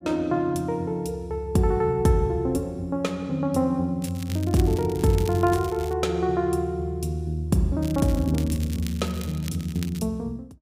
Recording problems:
crackle; from 4 to 6 s and from 8 to 10 s; loose cable, SNR 17 dB

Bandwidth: 15.5 kHz